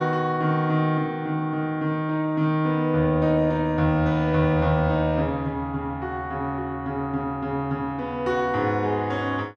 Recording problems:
none

